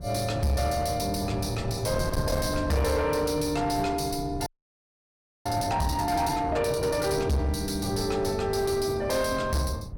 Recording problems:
distorted audio; soft clipping, signal-to-distortion ratio 10 dB
wind on the microphone; below 170 Hz, SNR 12 dB
frozen audio; at 4.5 s for 1 s

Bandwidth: 17.5 kHz